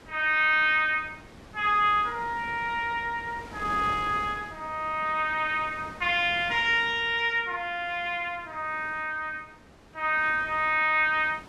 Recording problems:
wind on the microphone; below 1.3 kHz, SNR 20 dB

